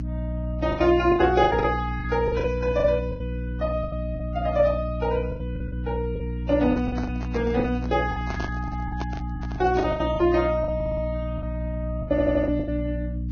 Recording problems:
lossy codec; Vorbis, log-spectral distance 2 dB, nothing above 6.2 kHz
hum; 60 Hz, harmonics up to 300 Hz, SNR 6 dB
packet loss; 14% of the sound replaced, filled with the last packet
microphone handling noise; from 6.5 to 10 s; peak -5 dB vs average level
stutter; at 11 s and at 12 s

